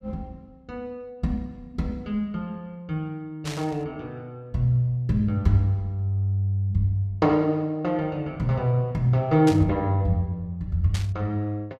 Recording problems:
burst of static; at 3.5 s, at 9.5 s and at 11 s; peak -4 dB vs average level

